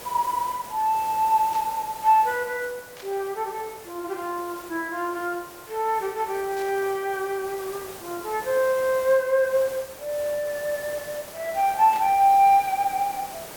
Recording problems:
background hiss; slope -4 dB per octave, SNR 16 dB
static burst; 4 times, first at 1.5 s; peak -13 dB vs average level

